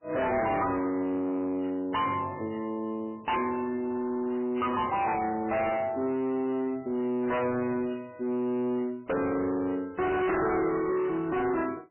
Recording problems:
lossy compression; MP3, log-spectral distance 3 dB, nothing above 3 kHz
distorted audio; hard clipping, uneven, signal-to-distortion ratio 6 dB

